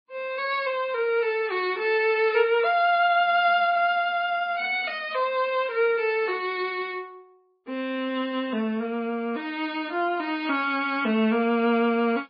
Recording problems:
codec artefacts; MP3, log-spectral distance 2 dB, nothing above 4.4 kHz

